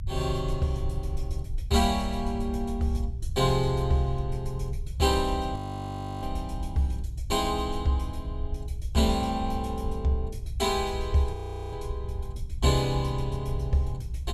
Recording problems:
low-frequency rumble; below 76 Hz, SNR 6 dB
frozen audio; at 5.5 s for 0.5 s and at 11 s

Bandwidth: 14.5 kHz